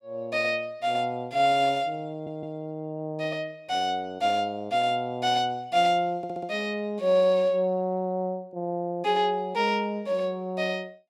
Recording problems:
stutter; at 2 s and at 6 s

